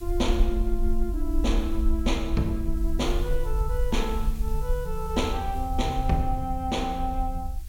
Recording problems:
hiss; slope +4 dB per octave, SNR 21 dB
rumble; below 52 Hz, SNR 1 dB

